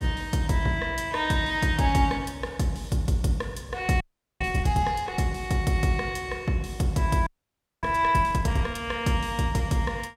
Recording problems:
frozen audio; at 4 s and at 7.5 s for 0.5 s

